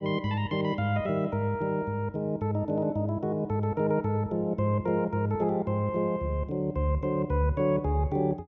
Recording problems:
none

